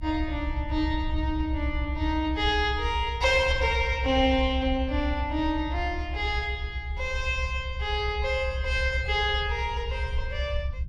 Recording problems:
low-frequency rumble; below 70 Hz, SNR 5 dB

